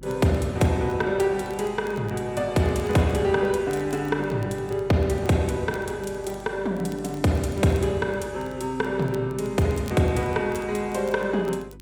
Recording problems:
electrical hum; 50 Hz, harmonics up to 350 Hz, SNR 21 dB
crackling; vinyl, SNR 27 dB

